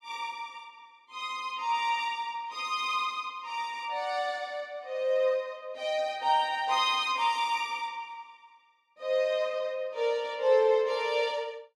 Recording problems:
none

